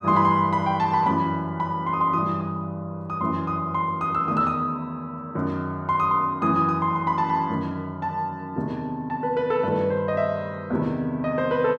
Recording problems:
none

